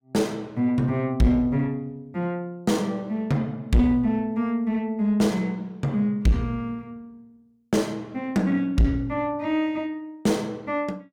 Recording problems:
distortion; soft clipping, signal-to-distortion ratio 8 dB

